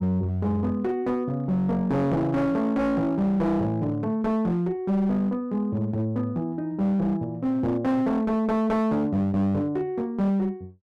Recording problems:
distortion; hard clipping, uneven, signal-to-distortion ratio 10 dB

